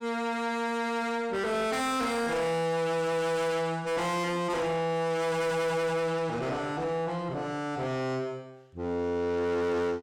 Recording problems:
distortion; soft clipping, signal-to-distortion ratio 5 dB

